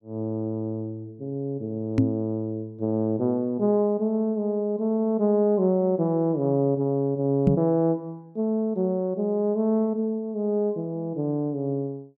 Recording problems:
microphone thump; at 2 s and at 7.5 s; peak +8 dB vs average level

